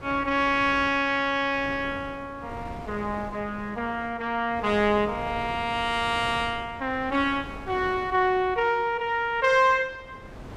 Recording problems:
wind noise; below 650 Hz, SNR 17 dB

